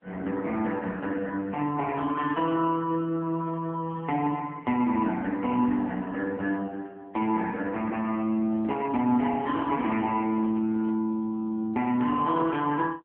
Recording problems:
telephone audio; 170 Hz to 3.3 kHz, AMR-NB
handling noise; from 8.5 to 11 s; peak -11 dB vs average level

